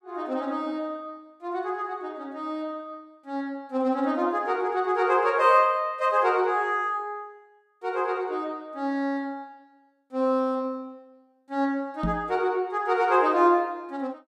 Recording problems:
microphone bump; at 12 s; peak +1 dB vs average level

